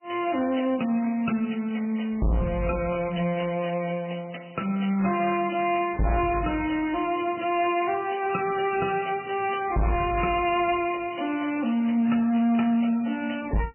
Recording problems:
codec artefacts; MP3, log-spectral distance 7 dB, nothing above 2.5 kHz
distorted audio; hard clipping, signal-to-distortion ratio 6 dB

